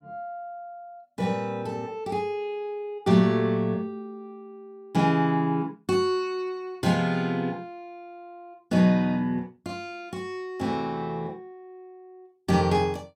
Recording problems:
none

